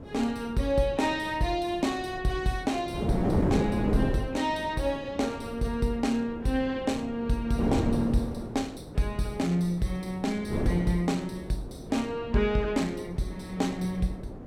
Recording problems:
wind on the microphone; below 410 Hz, SNR 6 dB

